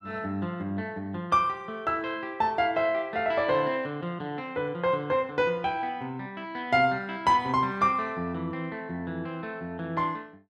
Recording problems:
none

